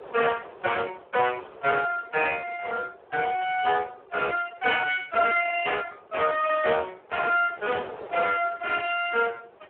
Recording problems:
telephone audio; 300 Hz to 3.1 kHz, Speex
wind noise; below 870 Hz, SNR 21 dB

